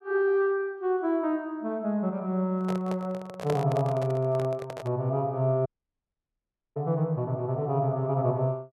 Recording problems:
microphone handling noise; from 2.5 to 5 s; peak -1 dB vs average level
audio cutting out; at 5.5 s for 1 s

